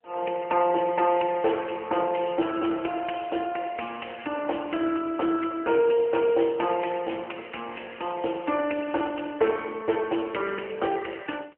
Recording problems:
telephone audio; 280 Hz to 3 kHz, AMR-NB

